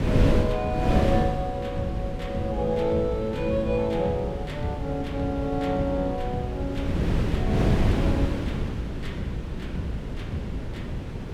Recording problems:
wind noise; below 270 Hz, SNR 0 dB

